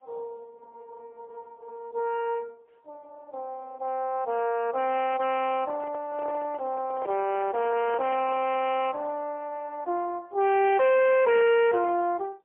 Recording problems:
phone line; 300 Hz to 3.1 kHz, AMR-NB, then MP3
distorted audio; hard clipping, uneven, signal-to-distortion ratio 8 dB
microphone handling noise; from 5.5 to 8.5 s; peak -9 dB vs average level

